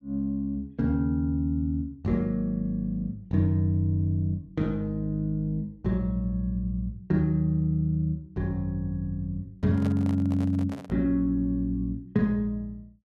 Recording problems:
handling noise; from 9.5 to 11 s; peak -8 dB vs average level

